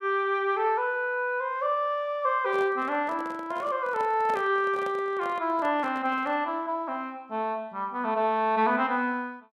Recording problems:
microphone handling noise; from 2.5 to 6.5 s; peak -7 dB vs average level

